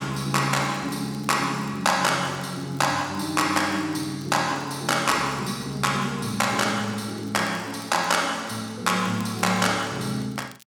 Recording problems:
crackle; vinyl, SNR 27 dB

